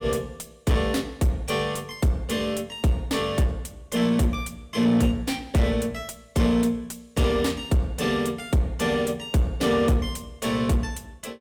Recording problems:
distorted audio; soft clipping, signal-to-distortion ratio 10 dB

